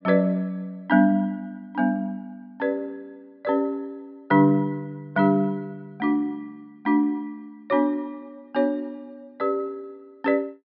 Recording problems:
treble cut off; nothing above 5.5 kHz

